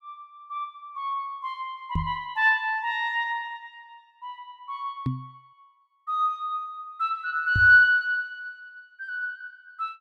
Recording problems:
microphone thump; at 2 s, at 5 s and at 7.5 s; peak 0 dB vs average level

